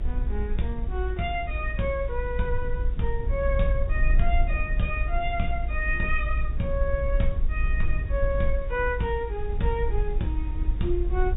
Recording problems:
low-pass filter; nothing above 4 kHz
hum; 50 Hz, harmonics up to 450 Hz, SNR 24 dB
hiss; SNR 27 dB
rumble; below 56 Hz, SNR 0 dB

